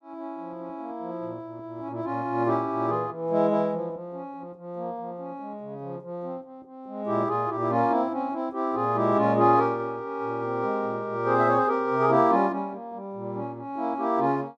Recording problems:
none

